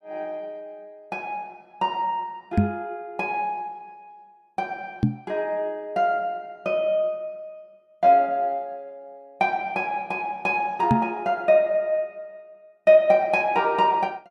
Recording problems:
microphone bump; at 2.5 s, at 5 s and at 11 s; peak +8 dB vs average level

